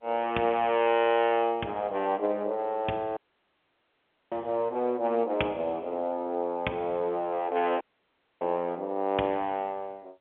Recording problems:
phone line; 240 Hz to 3.4 kHz, G.711
dropout; at 3 s for 1 s and at 8 s for 0.5 s

